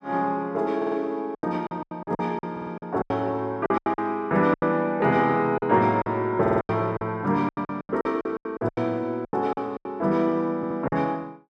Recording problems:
lost packets; 15% of the sound replaced, filled with silence
stutter; 4 times, first at 1 s

